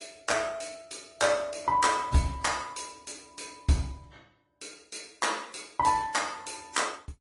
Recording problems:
codec artefacts; AAC, then MP3, log-spectral distance 7 dB, nothing above 11 kHz

